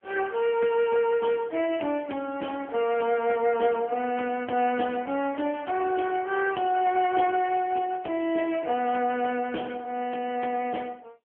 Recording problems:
phone line; 220 Hz to 3.2 kHz, AMR-NB

